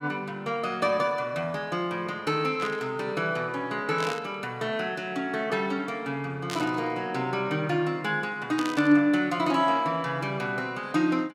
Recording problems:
burst of static; 4 times, first at 2.5 s; peak -3 dB vs average level

